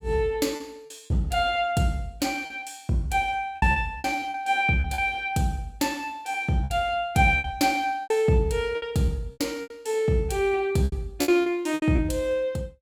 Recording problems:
packet loss; 10% of the sound replaced, filled with repeated pitch periods

